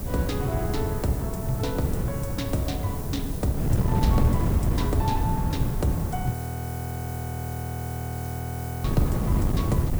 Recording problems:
background hiss; SNR 10 dB
wind on the microphone; below 180 Hz, SNR -2 dB
audio freezing; at 6.5 s for 2.5 s

